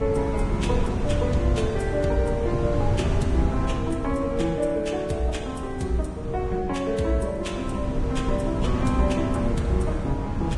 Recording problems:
codec artefacts; Vorbis, log-spectral distance 2 dB, nothing above 10.1 kHz
wind noise; below 170 Hz, SNR 3 dB

